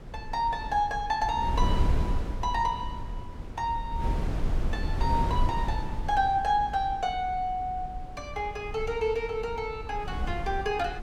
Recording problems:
wind noise; below 100 Hz, SNR 5 dB

